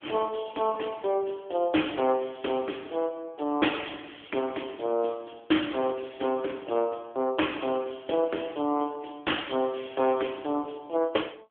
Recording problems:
telephone audio; 240 Hz to 3.4 kHz, AMR-NB

